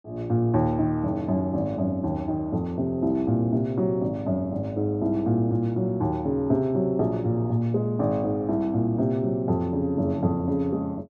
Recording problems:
none

